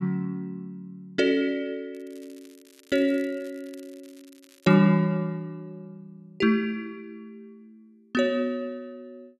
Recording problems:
crackling; from 2 to 5 s; loose cable, SNR 29 dB

